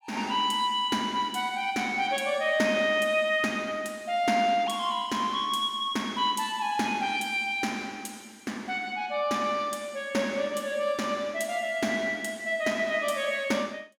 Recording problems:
none

